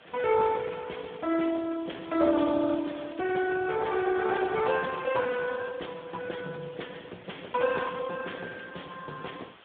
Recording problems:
phone line; 220 Hz to 2.1 kHz, Speex
background hiss; SNR 23 dB

